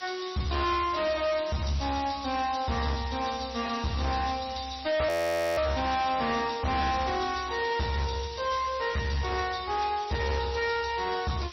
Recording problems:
lossy compression; MP3, log-spectral distance 14 dB, nothing above 16 kHz
distorted audio; hard clipping, uneven, signal-to-distortion ratio 7 dB
background hiss; slope +2 dB per octave, SNR 14 dB
frozen audio; at 5 s

